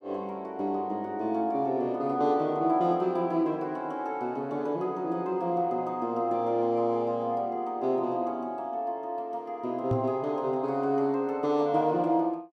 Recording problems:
knock on the microphone; at 10 s; peak +2 dB vs average level

